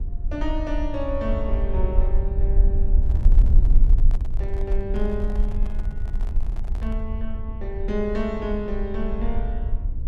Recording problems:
hum; 50 Hz, harmonics up to 550 Hz, SNR 23 dB
rumble; below 50 Hz, strongest tone 24 Hz, SNR -5 dB
microphone handling noise; from 3 to 7 s; peak -9 dB vs average level

